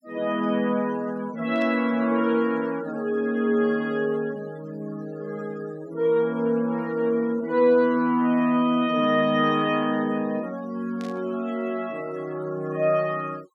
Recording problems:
denoising artefacts; signal-to-artefact ratio 22 dB
static burst; at 1.5 s and at 11 s; peak -15 dB vs average level

